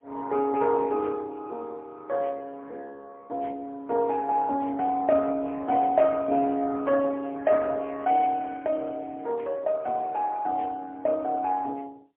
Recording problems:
telephone audio; 300 Hz to 3.8 kHz, AMR-NB, then MP3

